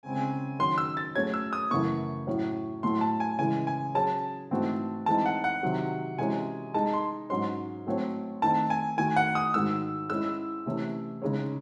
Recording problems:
none

